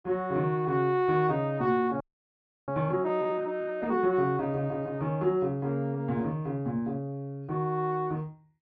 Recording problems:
frozen audio; at 2 s for 0.5 s

